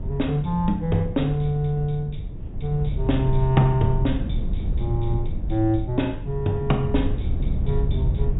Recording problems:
low-pass filter; nothing above 4 kHz
wind noise; below 100 Hz, SNR 4 dB

